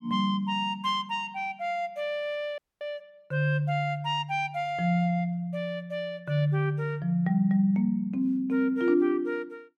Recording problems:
audio cutting out; at 2.5 s

